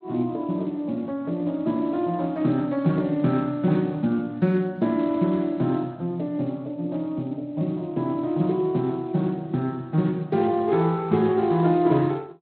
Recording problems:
codec artefacts; Speex, log-spectral distance 2 dB

